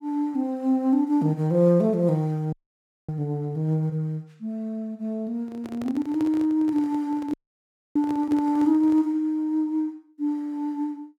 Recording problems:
audio freezing; at 2.5 s for 0.5 s and at 7.5 s for 0.5 s
handling noise; from 5.5 to 9 s; peak -7 dB vs average level

